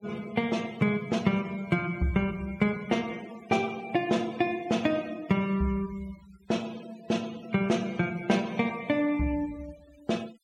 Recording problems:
denoising artefacts; signal-to-artefact ratio 21 dB

